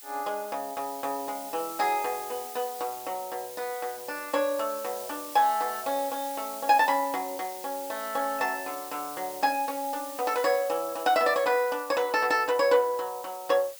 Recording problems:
hiss; slope +4 dB per octave, SNR 12 dB

